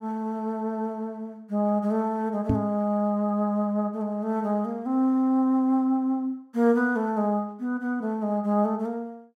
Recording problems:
knock on the microphone; at 2.5 s; peak +4 dB vs average level

